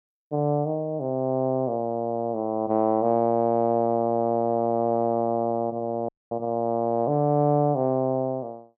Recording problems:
audio cutting out; at 6 s

